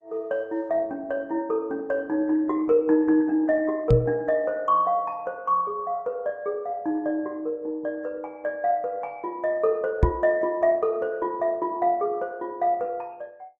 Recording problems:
lossy compression; Opus, log-spectral distance 2 dB
microphone thump; at 4 s and at 10 s; peak +9 dB vs average level

